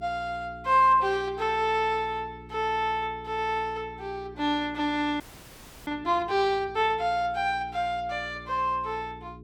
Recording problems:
electrical hum; 60 Hz, harmonics up to 420 Hz, SNR 20 dB
frozen audio; at 5 s for 0.5 s

